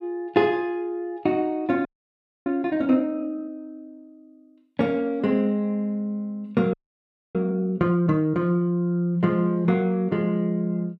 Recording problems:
audio freezing; at 2 s for 0.5 s and at 6.5 s for 0.5 s

